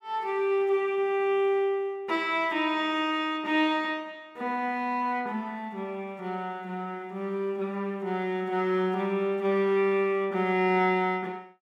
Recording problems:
none

